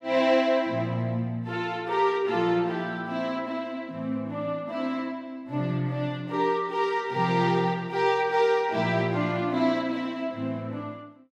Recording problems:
none

